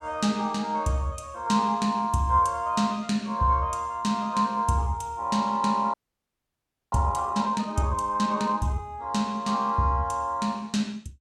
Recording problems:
audio freezing; at 6 s for 1 s

